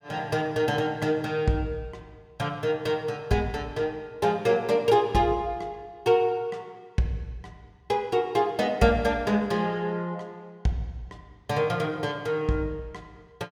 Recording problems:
none

